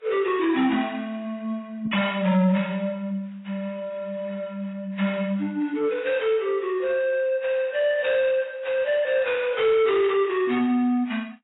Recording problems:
codec artefacts; AAC, log-spectral distance 2 dB, nothing above 3.8 kHz
distortion; soft clipping, signal-to-distortion ratio 12 dB

